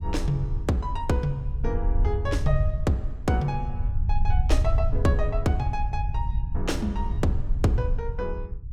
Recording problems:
rumble; below 76 Hz, SNR 0 dB

